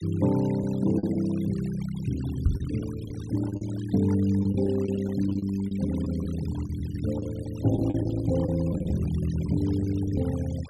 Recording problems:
denoising artefacts; signal-to-artefact ratio 19 dB
packet loss; 7% of the sound replaced, filled with the last packet
microphone thump; at 2.5 s; peak +7 dB vs average level

